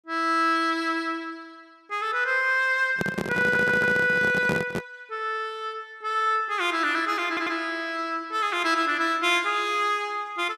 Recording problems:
microphone handling noise; from 3 to 5 s; peak 0 dB vs average level
audio stuttering; at 3.5 s and at 7.5 s

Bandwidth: 14.5 kHz